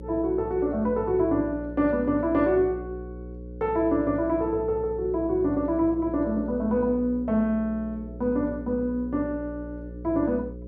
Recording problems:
hum; 60 Hz, harmonics up to 540 Hz, SNR 13 dB

